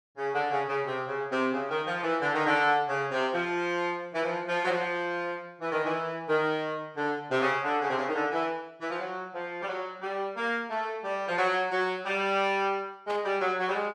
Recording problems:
static burst; at 13 s; peak -8 dB vs average level

